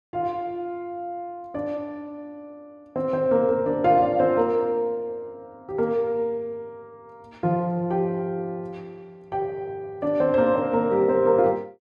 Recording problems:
none

